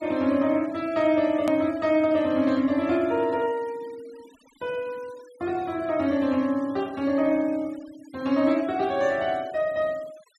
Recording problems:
noise reduction artefacts; signal-to-artefact ratio 24 dB
hard cut with a click; at 1.5 s

